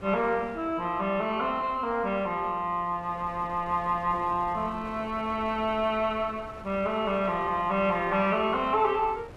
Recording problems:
wind on the microphone; below 760 Hz, SNR 20 dB

